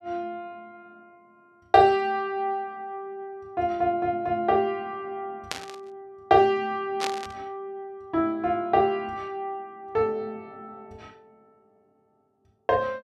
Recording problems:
burst of static; at 5.5 s and at 7 s; peak 0 dB vs average level

